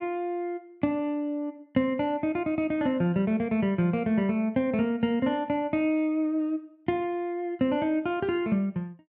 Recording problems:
none

